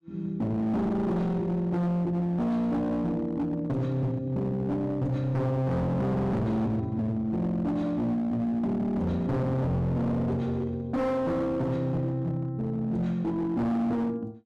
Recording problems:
distortion; hard clipping, signal-to-distortion ratio 8 dB

